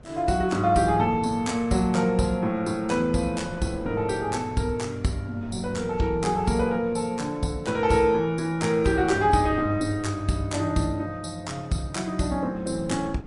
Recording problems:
lossy codec; MP3, log-spectral distance 2 dB, nothing above 10.7 kHz
wind noise; below 330 Hz, SNR 19 dB

